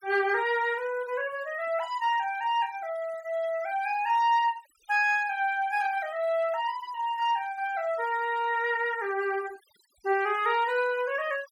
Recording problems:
denoising artefacts; signal-to-artefact ratio 22 dB

